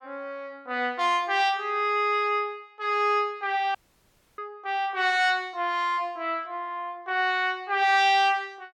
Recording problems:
audio cutting out; at 4 s for 0.5 s

